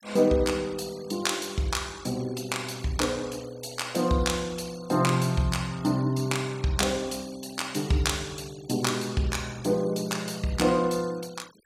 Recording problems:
noise reduction artefacts; signal-to-artefact ratio 22 dB

